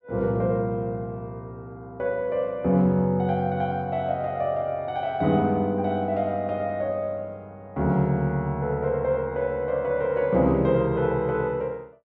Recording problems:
none

